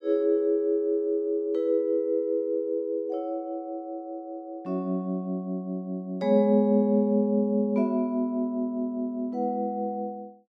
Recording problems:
none

